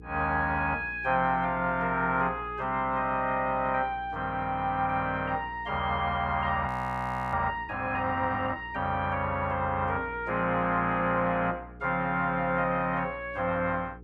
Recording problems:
electrical hum; 60 Hz, harmonics up to 480 Hz, SNR 19 dB
audio freezing; at 6.5 s for 0.5 s

